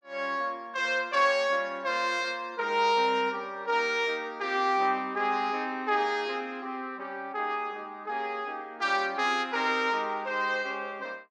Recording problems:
none

